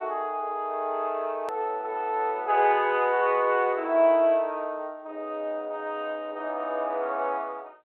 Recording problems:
telephone audio; 340 Hz to 3.2 kHz, G.726
edit click; at 1.5 s

